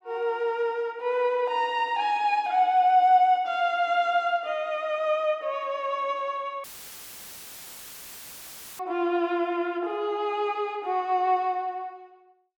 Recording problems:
audio cutting out; at 6.5 s for 2 s; filled with static

